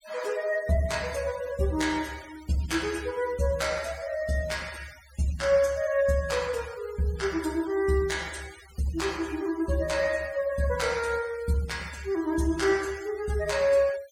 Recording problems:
denoising artefacts; signal-to-artefact ratio 18 dB

